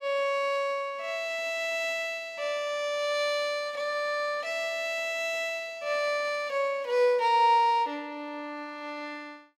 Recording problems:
none

